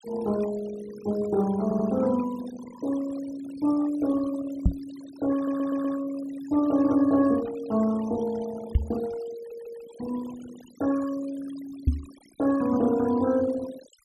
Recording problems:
denoising artefacts; signal-to-artefact ratio 18 dB
audio stuttering; at 1.5 s, at 5.5 s and at 9.5 s
microphone bump; at 4.5 s, at 9 s and at 12 s; peak +8 dB vs average level

